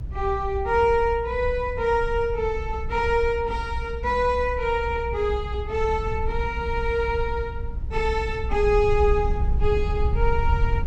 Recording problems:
low-frequency rumble; below 64 Hz, SNR 6 dB

